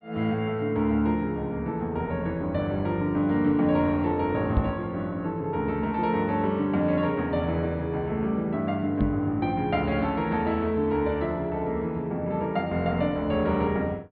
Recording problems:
low-pass filter; nothing above 4.7 kHz
microphone thump; at 4.5 s and at 9 s; peak +6 dB vs average level

